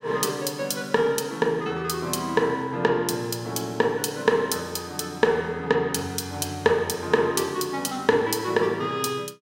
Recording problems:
none

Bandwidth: 16.5 kHz